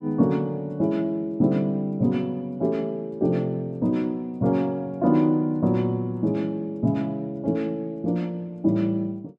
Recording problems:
none

